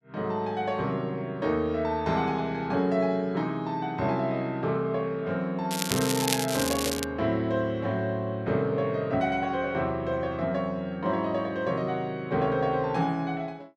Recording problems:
crackling; from 5.5 to 7 s; loose cable, SNR 3 dB

